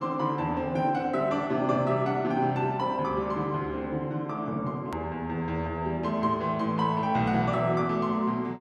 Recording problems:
click at an edit; at 5 s

